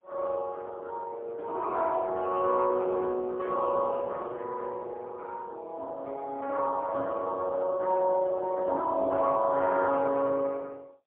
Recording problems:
phone line; 170 Hz to 2.5 kHz, AMR-NB, then MP3

